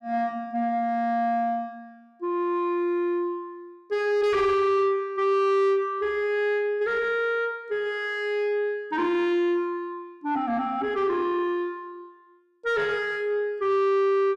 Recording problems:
distortion; soft clipping, signal-to-distortion ratio 10 dB

